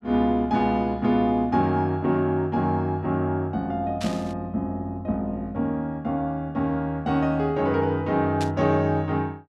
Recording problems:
static burst; at 4 s and at 8.5 s; peak -6 dB vs average level

